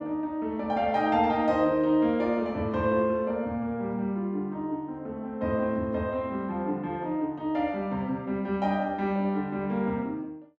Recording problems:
none

